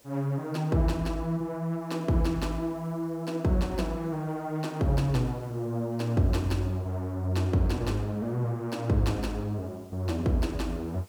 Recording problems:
hiss; SNR 29 dB

